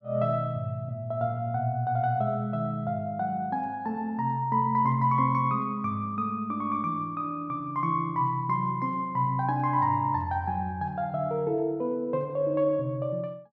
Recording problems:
none

